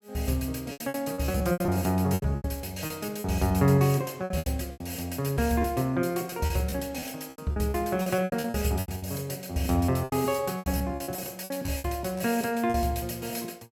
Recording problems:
lost packets; 15% of the sound replaced, filled with repeated pitch periods

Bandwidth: 18 kHz